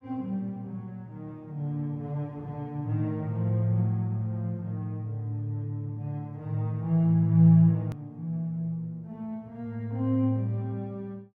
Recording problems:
click at an edit; at 8 s

